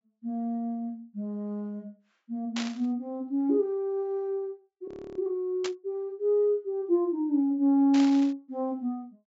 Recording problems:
low-pass filter; nothing above 8 kHz
burst of static; at 2.5 s, at 5.5 s and at 8 s; peak -3 dB vs average level
audio freezing; at 5 s

